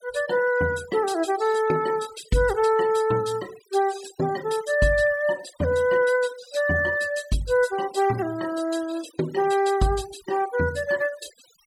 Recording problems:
denoising artefacts; signal-to-artefact ratio 18 dB

